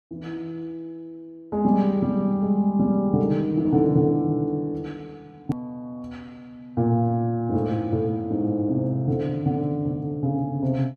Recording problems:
hard cut with a click; at 5.5 s

